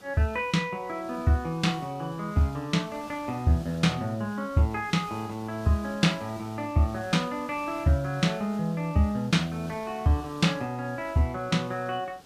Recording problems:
hiss; SNR 21 dB

